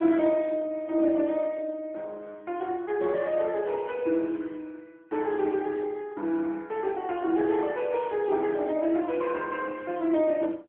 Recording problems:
phone line; 220 Hz to 3.5 kHz, AMR-NB

